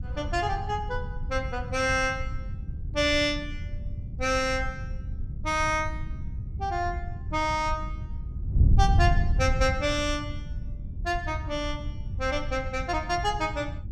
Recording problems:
wind on the microphone; below 100 Hz, SNR 4 dB

